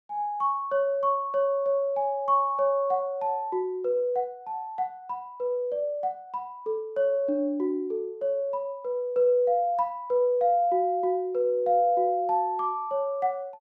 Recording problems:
none

